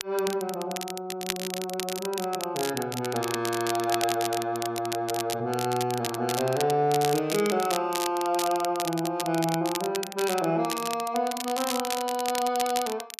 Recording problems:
crackling; vinyl, SNR 7 dB

